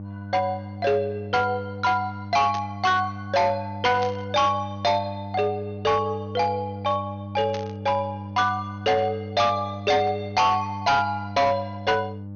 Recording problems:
low-pass filter; nothing above 6.5 kHz
distortion; hard clipping, signal-to-distortion ratio 10 dB
hum; 50 Hz, harmonics up to 600 Hz, SNR 11 dB
burst of static; at 2.5 s, at 4 s and at 7.5 s; peak -8 dB vs average level

